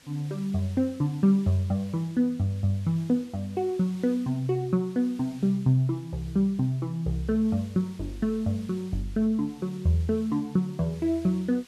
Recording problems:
hiss; slope 0 dB per octave, SNR 25 dB

